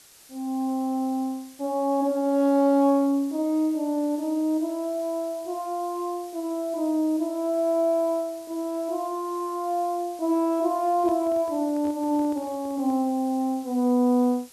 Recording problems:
background hiss; slope +1 dB per octave, SNR 23 dB
handling noise; from 11 to 13 s; peak -11 dB vs average level

